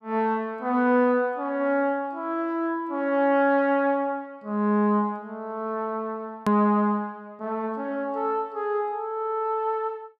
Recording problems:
click at an edit; at 6.5 s

